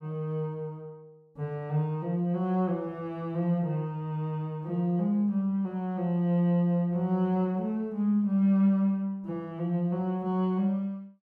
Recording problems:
none

